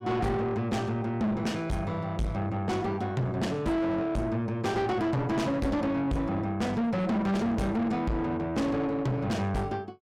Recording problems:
distorted audio; soft clipping, signal-to-distortion ratio 5 dB

